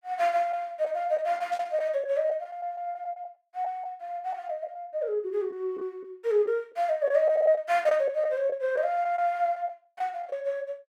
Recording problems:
packet loss; 6% of the sound replaced, filled with the last packet
static burst; at 1.5 s; peak -14 dB vs average level

